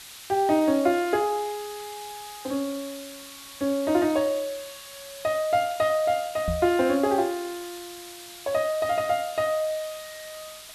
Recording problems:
hiss; SNR 15 dB
microphone thump; at 6.5 s; peak -1 dB vs average level

